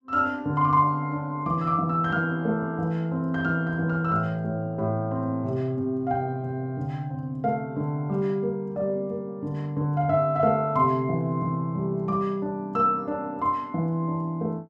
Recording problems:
none

